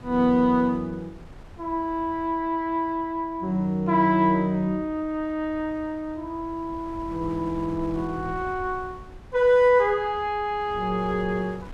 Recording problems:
wind on the microphone; below 260 Hz, SNR 20 dB

